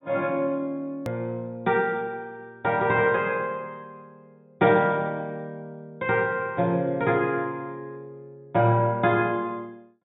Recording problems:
treble cut off; nothing above 4 kHz
edit click; at 1 s

